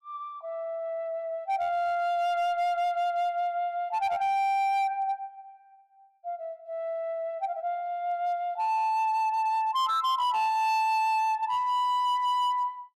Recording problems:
distortion; hard clipping, signal-to-distortion ratio 11 dB

